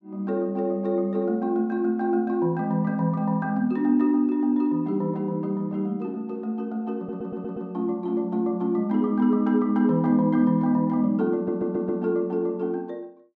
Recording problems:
stutter; at 7 s and at 11 s

